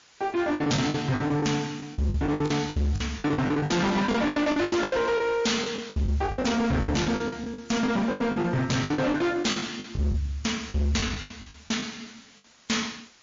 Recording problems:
lossy compression; MP3, log-spectral distance 6 dB, nothing above 6.9 kHz
distorted audio; hard clipping, signal-to-distortion ratio 6 dB
hiss; slope +1 dB per octave, SNR 26 dB
packet loss; 19% of the sound replaced, filled with the last packet

